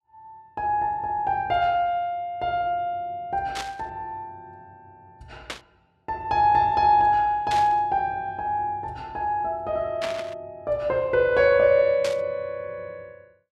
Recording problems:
static burst; 5 times, first at 3.5 s; peak -4 dB vs average level

